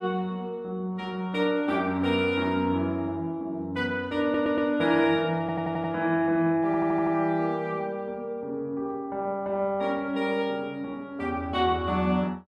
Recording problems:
audio stuttering; at 4 s, at 5.5 s and at 6.5 s

